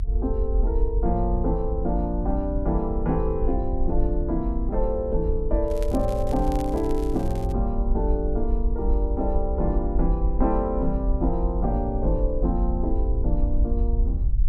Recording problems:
rumble; below 52 Hz, SNR 0 dB
crackling; from 5.5 to 7.5 s; loose cable, SNR 20 dB

